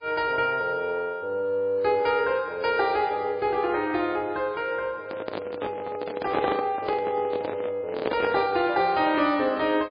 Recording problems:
lossy compression; MP3, log-spectral distance 2 dB, nothing above 4 kHz
microphone handling noise; from 5 to 8.5 s; peak +2 dB vs average level

